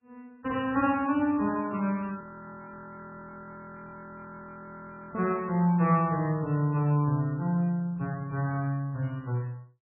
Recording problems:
lossy compression; MP3, log-spectral distance 3 dB, nothing above 2.7 kHz
audio freezing; at 2 s for 3 s

